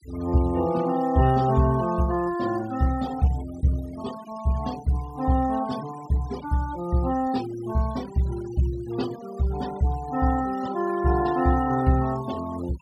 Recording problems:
denoising artefacts; signal-to-artefact ratio 18 dB

